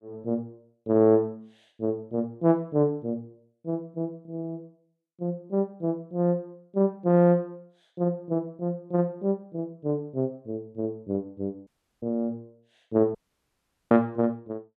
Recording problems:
dropout; at 12 s and at 13 s for 1 s

